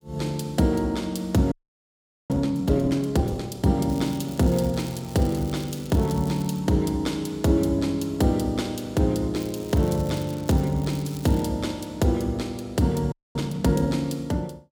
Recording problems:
frozen audio; at 1.5 s for 1 s and at 13 s
crackling; from 4 to 6.5 s and from 9.5 to 11 s; loose cable, SNR 20 dB

